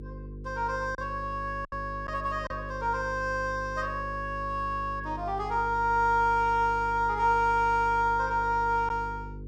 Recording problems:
hum; 50 Hz, harmonics up to 500 Hz, SNR 13 dB
packet loss; 1.7% of the sound replaced, filled with silence

